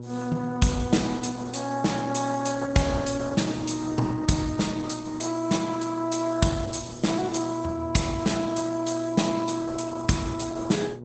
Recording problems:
lossy compression; Opus, log-spectral distance 6 dB, nothing above 8 kHz
electrical hum; 60 Hz, harmonics up to 960 Hz, SNR 13 dB

